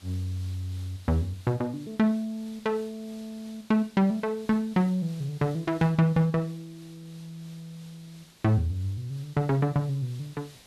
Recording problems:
background hiss; slope -1 dB per octave, SNR 24 dB

